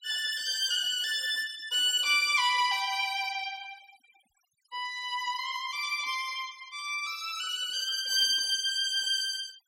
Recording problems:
denoising artefacts; signal-to-artefact ratio 21 dB

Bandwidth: 16 kHz